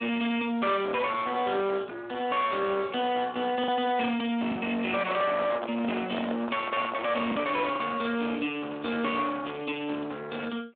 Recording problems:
phone line; 240 Hz to 3.7 kHz, Speex
distortion; soft clipping, signal-to-distortion ratio 8 dB
lost packets; 1.5% of the sound replaced, filled with the last packet
handling noise; from 5 to 7.5 s; peak 0 dB vs average level
crackle; from 8 to 10 s; loose cable, SNR 28 dB

